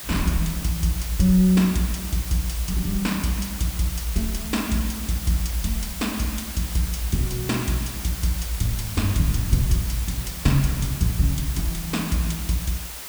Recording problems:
background hiss; slope 0 dB per octave, SNR 8 dB
crackling; at 1.5 s and from 6 to 10 s; loose cable, SNR 28 dB

